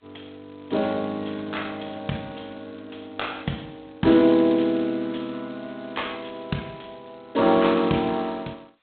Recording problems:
telephone audio; 150 Hz to 3.9 kHz, G.726

